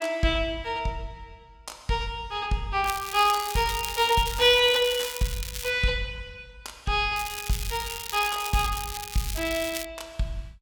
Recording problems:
crackle; from 3 to 5.5 s and from 7 to 10 s; loose cable, SNR 9 dB

